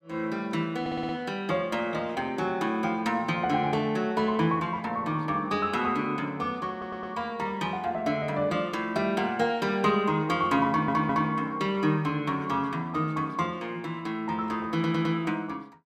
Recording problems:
audio stuttering; 4 times, first at 1 s

